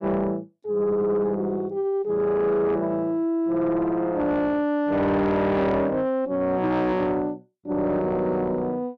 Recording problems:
distortion; soft clipping, signal-to-distortion ratio 10 dB

